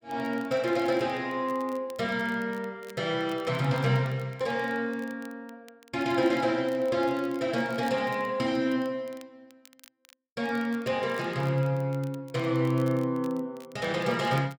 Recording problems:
crackling; vinyl, SNR 26 dB

